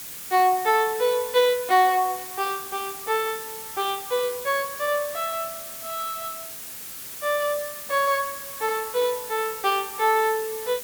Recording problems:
background hiss; slope 0 dB per octave, SNR 9 dB

